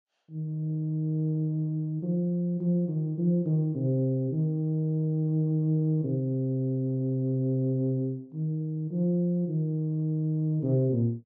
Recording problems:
none

